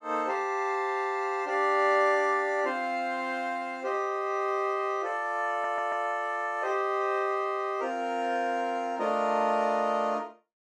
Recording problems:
audio stuttering; at 5.5 s

